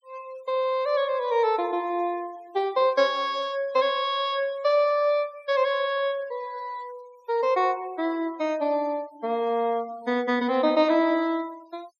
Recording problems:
denoising artefacts; signal-to-artefact ratio 26 dB

